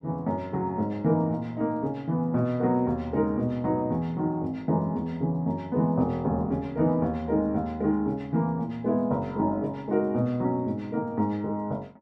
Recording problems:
none

